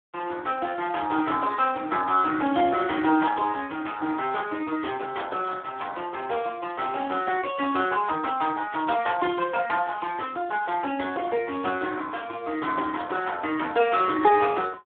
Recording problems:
phone line; 240 Hz to 3.5 kHz, Speex

